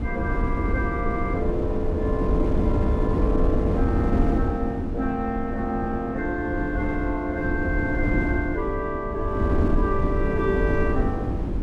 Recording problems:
wind noise; below 270 Hz, SNR -1 dB

